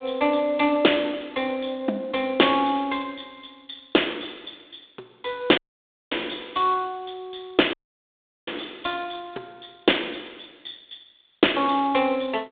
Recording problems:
telephone audio; 240 Hz to 3.6 kHz, G.726
audio cutting out; at 5.5 s for 0.5 s and at 7.5 s for 0.5 s

